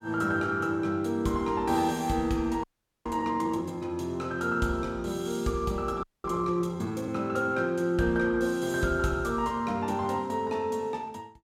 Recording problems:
frozen audio; at 2.5 s and at 6 s

